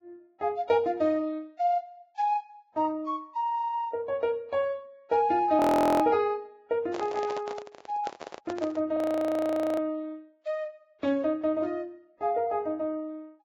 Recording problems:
codec artefacts; Vorbis, log-spectral distance 2 dB, nothing above 17.1 kHz
frozen audio; at 5.5 s and at 9 s for 1 s
handling noise; from 7 to 9 s; peak -5 dB vs average level

